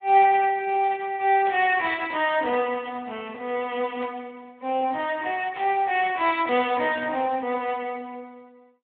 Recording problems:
phone line; 280 Hz to 3.4 kHz, Speex
static burst; at 1.5 s, at 4 s and at 5.5 s; peak -10 dB vs average level

